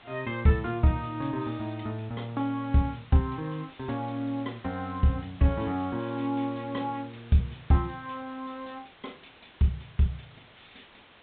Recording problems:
treble cut off; nothing above 4 kHz
background hiss; SNR 23 dB

